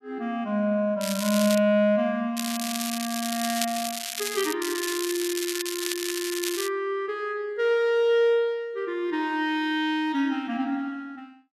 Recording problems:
crackle; at 1 s, from 2.5 to 4.5 s and from 4.5 to 6.5 s; loose cable, SNR 5 dB

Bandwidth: 13.5 kHz